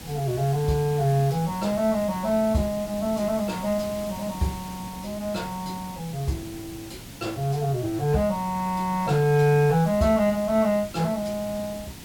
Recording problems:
hiss; SNR 14 dB

